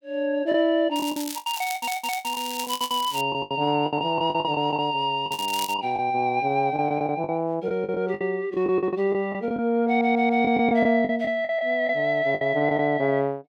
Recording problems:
lost packets; 13% of the sound replaced, filled with the last packet
crackle; from 1 to 3 s and at 5.5 s; loose cable, SNR 11 dB
stutter; at 1.5 s and at 10 s

